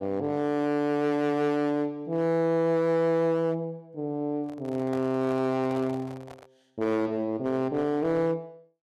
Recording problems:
distorted audio; hard clipping, signal-to-distortion ratio 11 dB
handling noise; from 4.5 to 6.5 s; peak -9 dB vs average level

